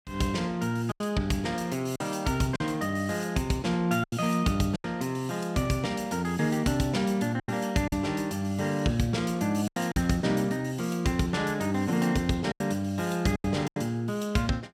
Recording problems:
lost packets; 5% of the sound replaced, filled with silence

